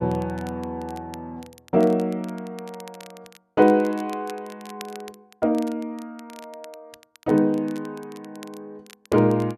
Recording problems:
crackling; vinyl, SNR 24 dB

